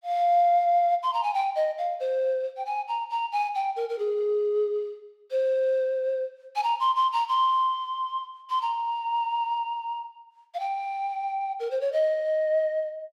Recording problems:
none

